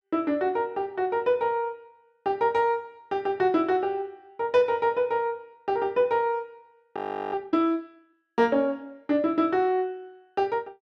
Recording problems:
frozen audio; at 7 s

